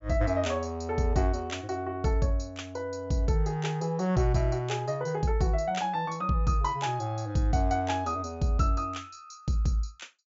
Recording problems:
treble cut off; nothing above 8 kHz

